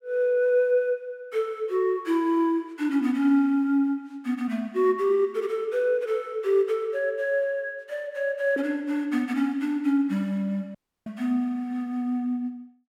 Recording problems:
dropout; at 11 s

